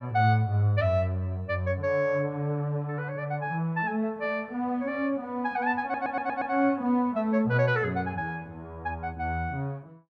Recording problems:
stutter; at 6 s

